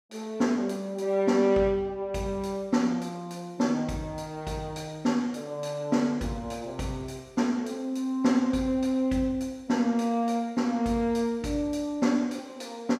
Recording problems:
none

